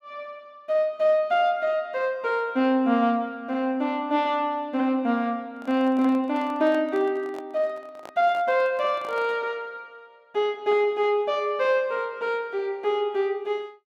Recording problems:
handling noise; from 5.5 to 9.5 s; peak -11 dB vs average level

